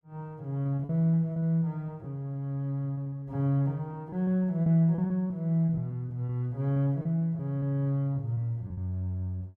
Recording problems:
packet loss; 9% of the sound replaced, filled with repeated pitch periods

